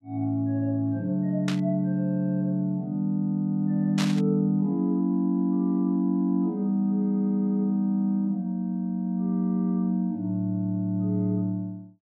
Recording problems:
static burst; at 1.5 s and at 4 s; peak -2 dB vs average level

